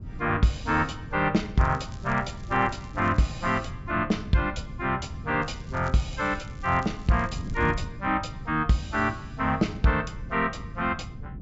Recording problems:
treble missing; nothing above 8 kHz
wind on the microphone; below 160 Hz, SNR 12 dB
crackle; from 1.5 to 3.5 s and from 5.5 to 8 s; loose cable, SNR 27 dB

